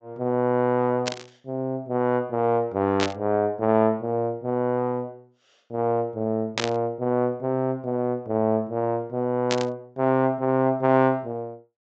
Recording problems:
treble cut off; nothing above 8 kHz
static burst; 4 times, first at 1 s; peak +2 dB vs average level

